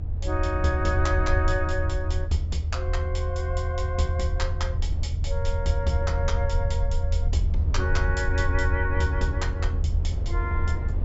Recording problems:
treble missing; nothing above 8 kHz
rumble; below 80 Hz, SNR -3 dB
wind noise; below 480 Hz, SNR 15 dB

